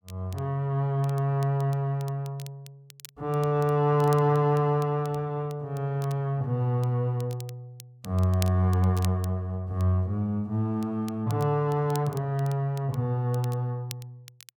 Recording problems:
crackling; vinyl, SNR 22 dB

